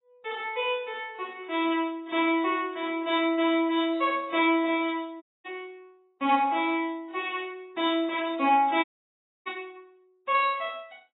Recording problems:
codec artefacts; AAC, log-spectral distance 3 dB, nothing above 3.3 kHz
dropout; at 5 s and at 9 s for 0.5 s

